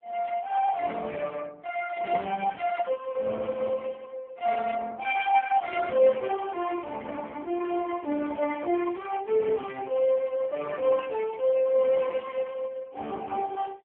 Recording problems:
telephone audio; 240 Hz to 2.8 kHz, AMR-NB

